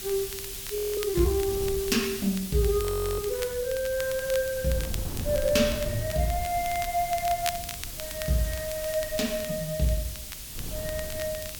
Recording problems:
background hiss; slope +4 dB per octave, SNR 8 dB
wind on the microphone; below 140 Hz, SNR 13 dB
crackling; vinyl, SNR 14 dB
frozen audio; at 1 s and at 3 s

